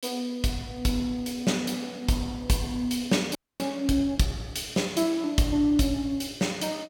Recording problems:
frozen audio; at 3.5 s

